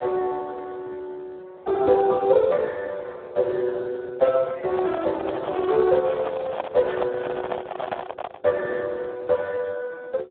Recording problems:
telephone audio; 320 Hz to 2.6 kHz, Speex
handling noise; from 4.5 to 8.5 s; peak +1 dB vs average level

